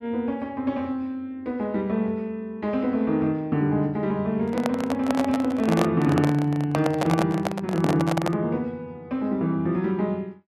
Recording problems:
handling noise; from 4.5 to 8.5 s; peak +3 dB vs average level

